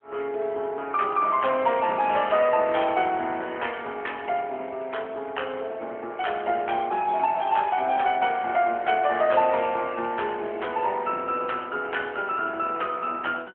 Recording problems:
phone line; 280 Hz to 3.3 kHz, AMR-NB

